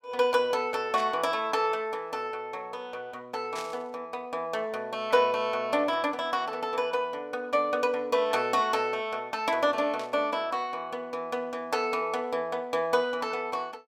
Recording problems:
static burst; at 1 s, at 3.5 s and at 10 s; peak -7 dB vs average level

